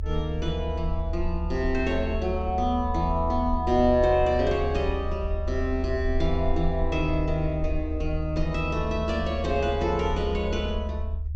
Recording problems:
treble cut off; nothing above 8 kHz
rumble; below 76 Hz, SNR 5 dB

